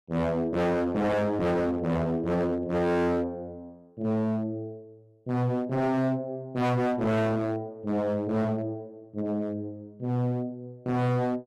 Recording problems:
distorted audio; hard clipping, uneven, signal-to-distortion ratio 6 dB

